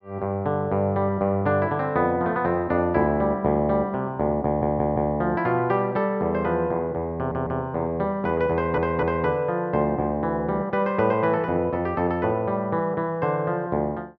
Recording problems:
audio stuttering; at 4.5 s, at 7 s and at 8.5 s

